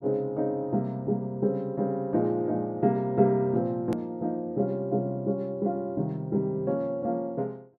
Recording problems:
hard cut with a click; at 4 s

